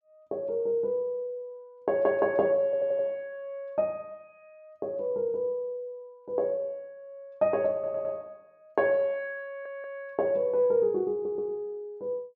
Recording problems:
stutter; 4 times, first at 2.5 s

